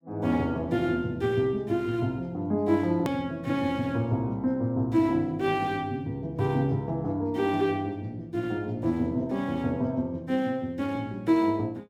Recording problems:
edit click; at 3 s

